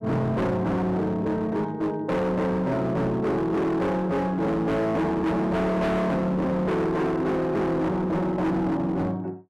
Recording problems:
distorted audio; hard clipping, signal-to-distortion ratio 7 dB

